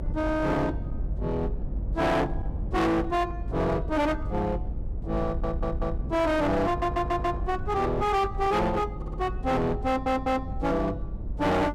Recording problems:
distorted audio; hard clipping, uneven, signal-to-distortion ratio 8 dB
rumble; below 110 Hz, SNR 7 dB
stutter; 4 times, first at 5.5 s

